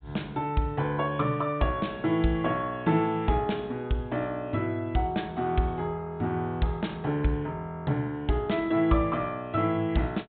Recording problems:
treble cut off; nothing above 4 kHz

